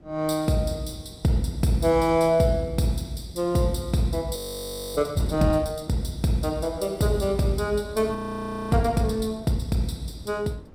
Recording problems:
wind noise; below 320 Hz, SNR 19 dB
frozen audio; at 4.5 s for 0.5 s and at 8 s for 0.5 s

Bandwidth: 16 kHz